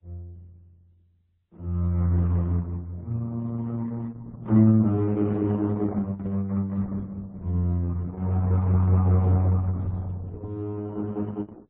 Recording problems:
lossy codec; Opus, then MP3, log-spectral distance 2 dB, nothing above 16 kHz

